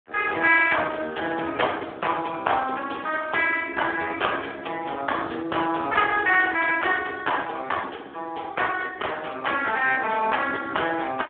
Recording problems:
phone line; 240 Hz to 3.4 kHz, Speex

